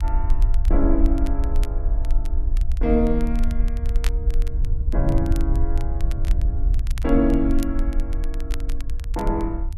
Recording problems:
rumble; below 50 Hz, SNR 0 dB
wind on the microphone; below 78 Hz, SNR 6 dB
crackling; vinyl, SNR 20 dB

